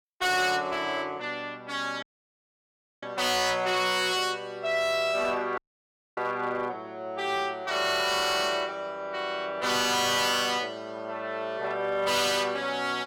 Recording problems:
distorted audio; hard clipping, signal-to-distortion ratio 12 dB
dropout; at 2 s for 1 s and at 5.5 s for 0.5 s

